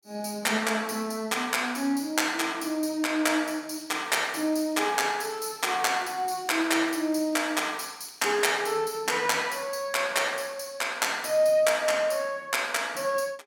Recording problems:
crackle; from 3.5 to 6.5 s and from 7 to 8.5 s; loose cable, SNR 30 dB

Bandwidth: 17.5 kHz